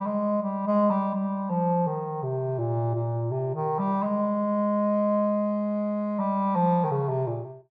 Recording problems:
none

